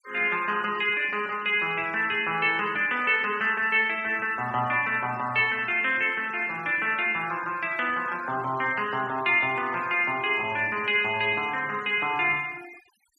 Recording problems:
denoising artefacts; signal-to-artefact ratio 22 dB

